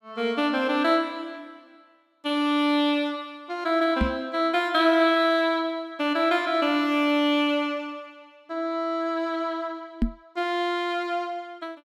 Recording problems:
microphone thump; at 4 s and at 10 s; peak +4 dB vs average level

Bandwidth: 15 kHz